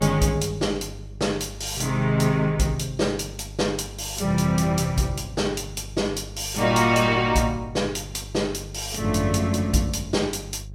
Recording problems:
hum; 50 Hz, harmonics up to 400 Hz, SNR 15 dB

